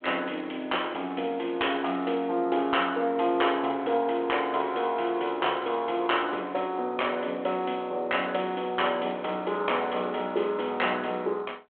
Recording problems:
telephone audio; 300 Hz to 3.4 kHz, G.726

